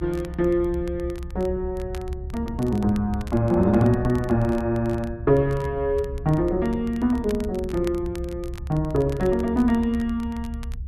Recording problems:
low-frequency rumble; below 78 Hz, SNR 11 dB
crackle; vinyl, SNR 24 dB

